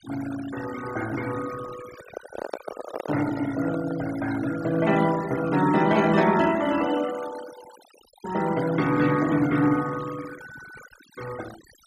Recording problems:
noise reduction artefacts; signal-to-artefact ratio 14 dB
microphone handling noise; from 2 to 4 s; peak -3 dB vs average level

